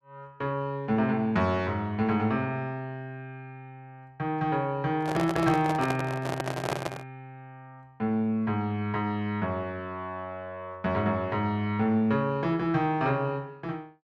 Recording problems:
handling noise; from 5 to 7 s; peak +2 dB vs average level

